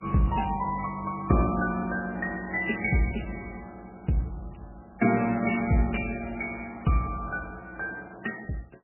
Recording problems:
lossy compression; AAC, then MP3, log-spectral distance 6 dB, nothing above 2.4 kHz

